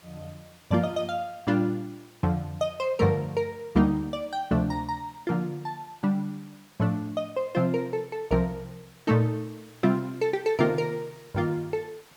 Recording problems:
hiss; slope -2 dB per octave, SNR 26 dB

